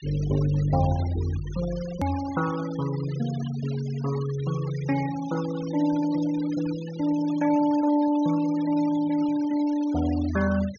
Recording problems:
low-pass filter; nothing above 6.7 kHz
noise reduction artefacts; signal-to-artefact ratio 17 dB
hard cut with a click; at 2 s

